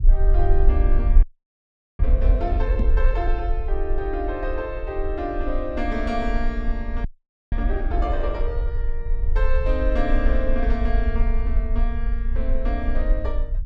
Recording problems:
rumble; below 50 Hz, strongest tone 20 Hz, SNR -4 dB
frozen audio; at 1 s for 1 s and at 7 s
microphone thump; at 3 s; peak +6 dB vs average level

